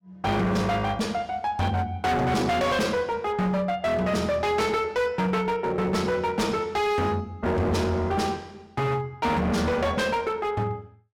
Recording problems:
distorted audio; hard clipping, signal-to-distortion ratio 7 dB

